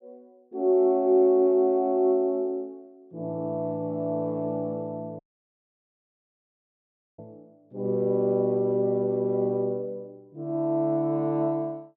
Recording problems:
dropout; at 5 s for 2 s

